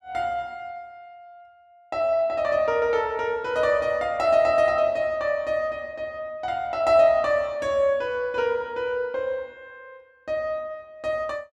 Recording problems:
none

